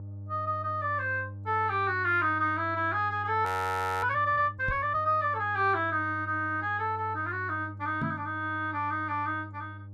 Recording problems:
mains hum; 50 Hz, harmonics up to 300 Hz, SNR 13 dB
frozen audio; at 3.5 s for 0.5 s
microphone thump; at 4.5 s and at 8 s; peak 0 dB vs average level

